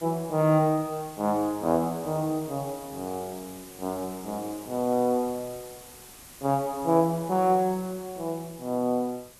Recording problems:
background hiss; slope -2 dB per octave, SNR 18 dB

